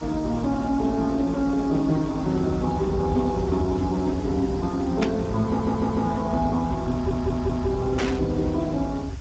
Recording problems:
codec artefacts; Speex, log-spectral distance 3 dB
background hiss; SNR 21 dB
rumble; below 110 Hz, SNR 11 dB
static burst; at 5 s and at 8 s; peak -1 dB vs average level
stutter; at 5.5 s and at 7 s

